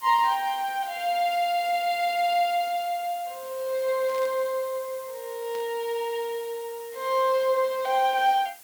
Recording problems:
hiss; slope 0 dB per octave, SNR 18 dB
static burst; at 4 s and at 5.5 s; peak -16 dB vs average level

